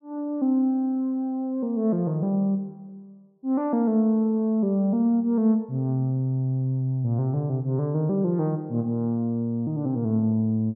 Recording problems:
none

